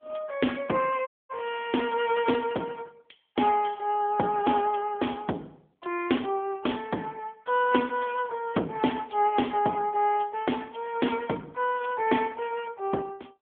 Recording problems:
telephone audio; 190 Hz to 3.4 kHz, AMR-NB
audio cutting out; at 1 s

